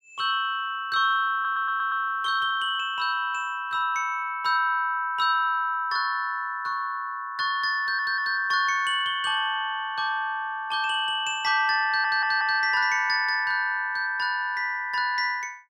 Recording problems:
audio stuttering; at 1.5 s, at 8 s and at 12 s

